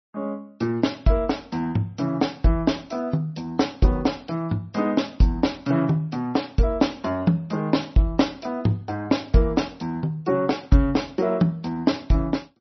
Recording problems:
lossy compression; MP3, log-spectral distance 3 dB, nothing above 5.8 kHz

